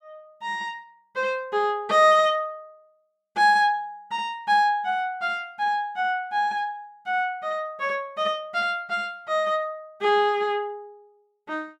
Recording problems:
none

